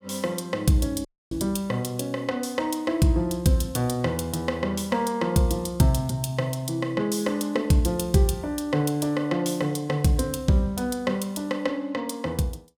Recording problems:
audio cutting out; at 1 s

